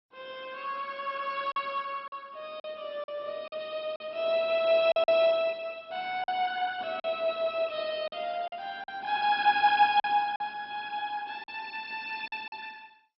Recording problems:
codec artefacts; MP2, log-spectral distance 3 dB, nothing above 5.3 kHz
lost packets; 6% of the sound replaced, filled with silence

